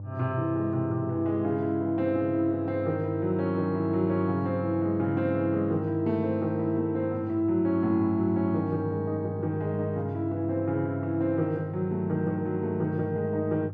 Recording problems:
hum; 50 Hz, harmonics up to 600 Hz, SNR 10 dB

